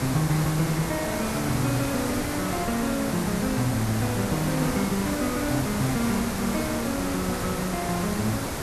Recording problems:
hiss; slope -5 dB per octave, SNR 2 dB

